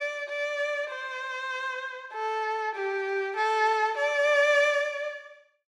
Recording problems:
none

